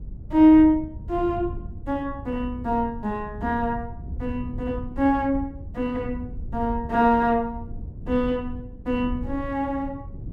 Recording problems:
wind noise; below 110 Hz, SNR 13 dB

